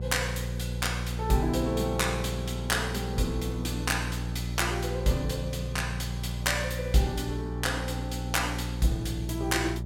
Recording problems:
mains hum; 60 Hz, harmonics up to 600 Hz, SNR 4 dB

